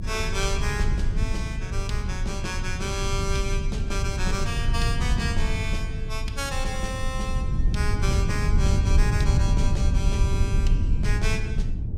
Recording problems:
rumble; below 98 Hz, SNR -5 dB

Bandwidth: 16.5 kHz